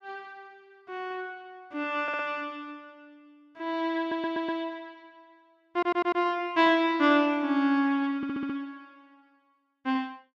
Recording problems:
audio stuttering; 4 times, first at 2 s

